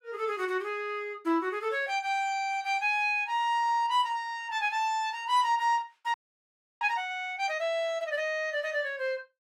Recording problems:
frozen audio; at 6 s for 0.5 s

